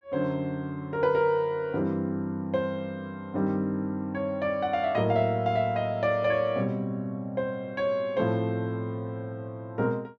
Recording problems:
none

